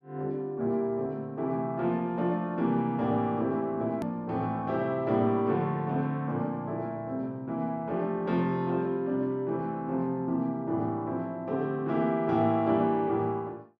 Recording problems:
edit click; at 4 s

